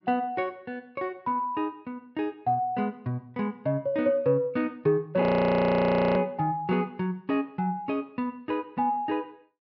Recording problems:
treble missing; nothing above 5.5 kHz
frozen audio; at 5 s for 1 s

